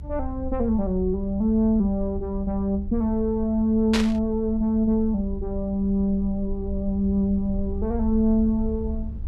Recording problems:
rumble; below 70 Hz, SNR 10 dB
static burst; at 4 s; peak +2 dB vs average level

